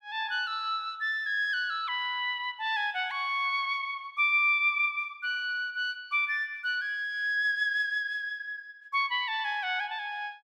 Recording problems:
none

